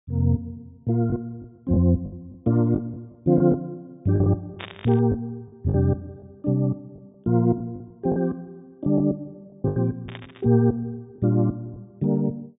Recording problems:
treble cut off; nothing above 3.7 kHz
lost packets; 7% of the sound replaced, filled with the last packet
static burst; at 4.5 s and at 10 s; peak -7 dB vs average level

